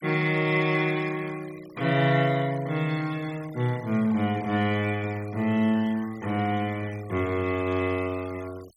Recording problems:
noise reduction artefacts; signal-to-artefact ratio 21 dB

